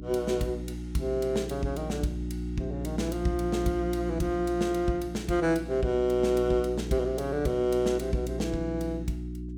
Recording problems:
hum; 60 Hz, harmonics up to 360 Hz, SNR 7 dB

